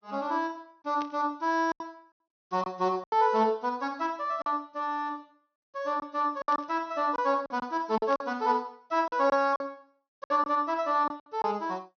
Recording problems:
low-pass filter; nothing above 6.3 kHz
lost packets; 7% of the sound replaced, filled with silence
burst of static; at 1 s, at 6.5 s and at 8 s; peak -11 dB vs average level

